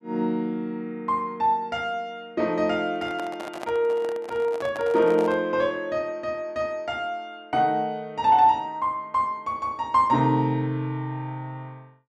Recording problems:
microphone handling noise; from 3 to 5.5 s; peak -5 dB vs average level

